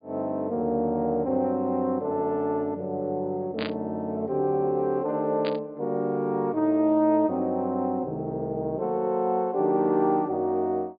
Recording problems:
low-pass filter; nothing above 4.8 kHz
burst of static; at 3.5 s and at 5.5 s; peak -3 dB vs average level

